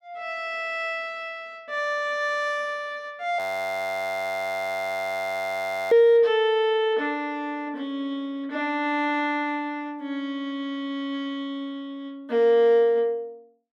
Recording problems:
frozen audio; at 3.5 s for 2.5 s

